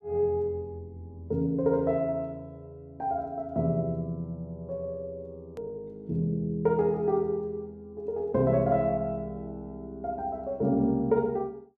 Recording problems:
click at an edit; at 5.5 s

